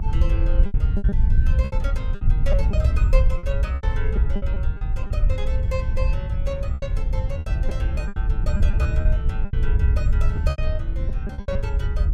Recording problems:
hum; 50 Hz, harmonics up to 750 Hz, SNR 5 dB
wind noise; below 70 Hz, SNR -11 dB
packet loss; 11% of the sound replaced, filled with repeated pitch periods

